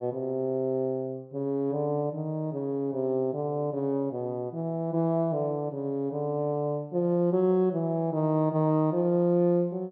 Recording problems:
none

